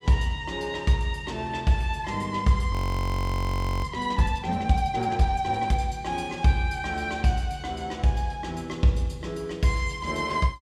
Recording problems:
audio freezing; at 2.5 s for 1 s

